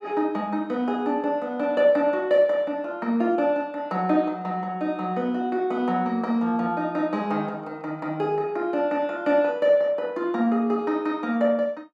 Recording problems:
none

